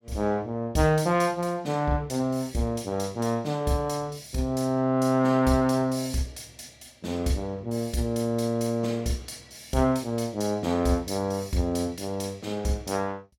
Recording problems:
none

